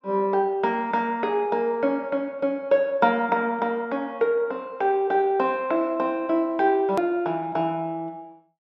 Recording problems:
treble cut off; nothing above 7.9 kHz
click at an edit; at 7 s

